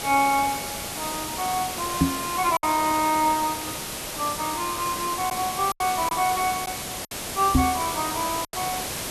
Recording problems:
hiss; slope -2 dB per octave, SNR 4 dB
lost packets; 3% of the sound replaced, filled with silence
microphone thump; at 2 s and at 7.5 s; peak +9 dB vs average level

